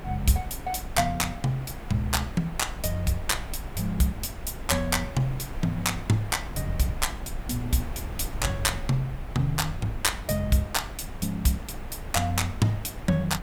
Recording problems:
background hiss; SNR 15 dB
rumble; below 72 Hz, strongest tone 22 Hz, SNR 12 dB

